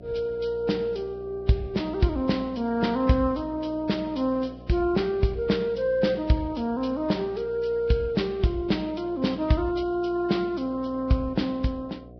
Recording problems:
codec artefacts; Vorbis, log-spectral distance 2 dB, nothing above 5.3 kHz
electrical hum; 60 Hz, harmonics up to 720 Hz, SNR 19 dB

